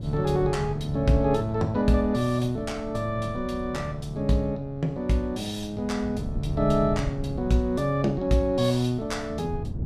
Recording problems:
wind noise; below 160 Hz, SNR 11 dB

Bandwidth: 14.5 kHz